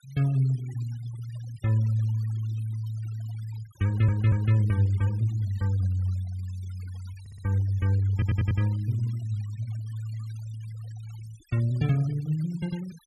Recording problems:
noise reduction artefacts; signal-to-artefact ratio 24 dB
stutter; at 4 s, at 7 s and at 8 s

